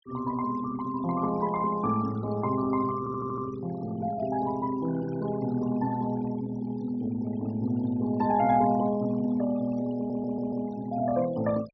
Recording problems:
low-pass filter; nothing above 5.9 kHz
noise reduction artefacts; signal-to-artefact ratio 19 dB
audio stuttering; at 3 s and at 10 s

